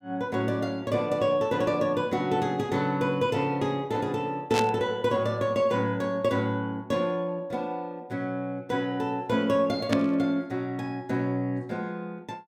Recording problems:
burst of static; at 4.5 s and at 10 s; peak +2 dB vs average level

